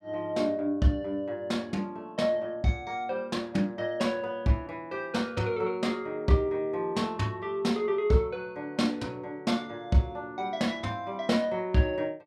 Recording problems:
none

